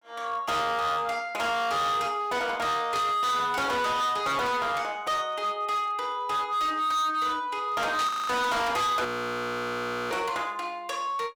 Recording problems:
distortion; hard clipping, signal-to-distortion ratio 8 dB
static burst; at 3 s, at 8 s and at 10 s; peak -3 dB vs average level
audio freezing; at 8 s and at 9 s for 1 s

